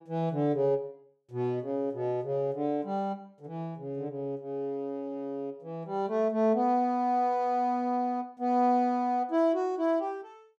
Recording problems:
none

